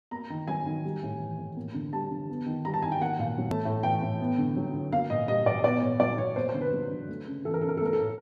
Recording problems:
hard cut with a click; at 3.5 s

